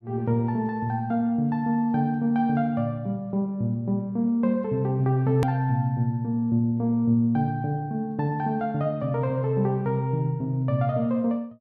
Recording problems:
edit click; at 5.5 s

